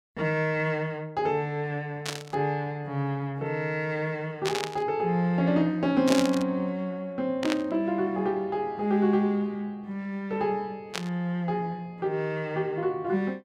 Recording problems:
burst of static; 5 times, first at 2 s; peak +2 dB vs average level

